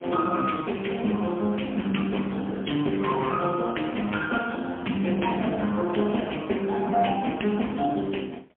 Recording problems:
phone line; 150 Hz to 3.3 kHz, AMR-NB, then MP3

